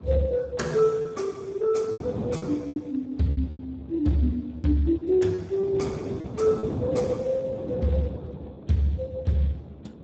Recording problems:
lossy codec; Speex, log-spectral distance 3 dB, nothing above 7.3 kHz
wind on the microphone; below 420 Hz, SNR 11 dB
lost packets; 5% of the sound replaced, filled with repeated pitch periods

